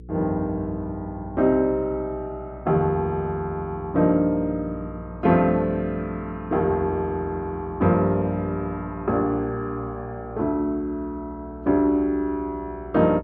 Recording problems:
hum; 60 Hz, harmonics up to 480 Hz, SNR 17 dB

